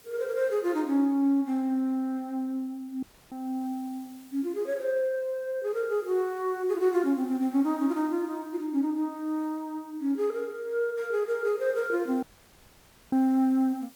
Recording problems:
hiss; slope -2 dB per octave, SNR 27 dB
audio cutting out; at 3 s and at 12 s for 1 s

